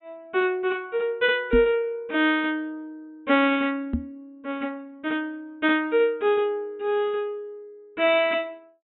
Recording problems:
treble cut off; nothing above 3.9 kHz
microphone thump; at 1.5 s and at 4 s; peak +3 dB vs average level

